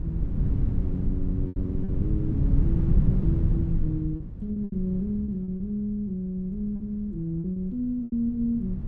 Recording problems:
wind on the microphone; below 140 Hz, SNR -2 dB
lost packets; 7% of the sound replaced, filled with repeated pitch periods

